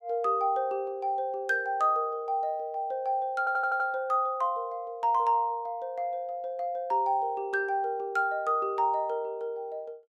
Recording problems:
stutter; at 3.5 s

